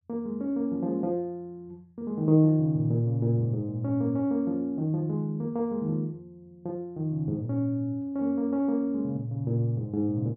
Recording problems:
none

